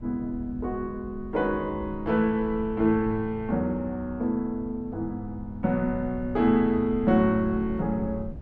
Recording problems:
wind noise; below 140 Hz, SNR 15 dB

